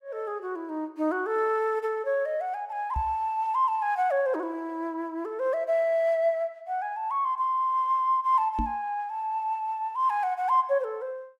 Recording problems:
microphone thump; at 3 s and at 8.5 s; peak 0 dB vs average level

